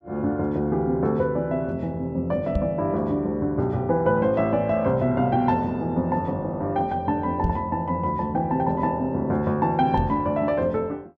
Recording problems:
knock on the microphone; at 2.5 s, at 7.5 s and at 10 s; peak +2 dB vs average level

